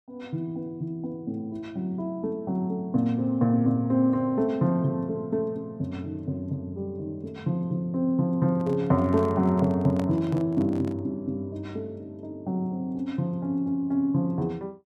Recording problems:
microphone handling noise; from 8.5 to 11 s; peak -5 dB vs average level

